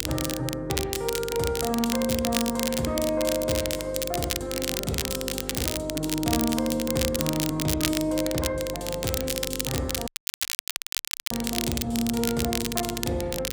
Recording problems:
mains hum; 50 Hz, harmonics up to 500 Hz, SNR 11 dB
crackle; vinyl, SNR 2 dB
audio cutting out; at 10 s for 1 s

